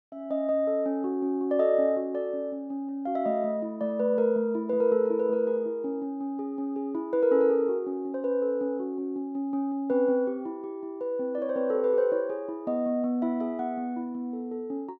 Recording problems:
none

